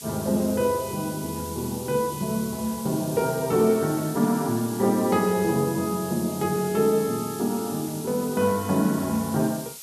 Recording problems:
hiss; SNR 12 dB

